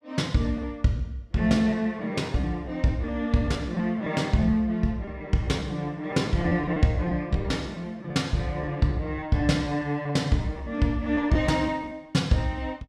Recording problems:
packet loss; 7% of the sound replaced, filled with repeated pitch periods

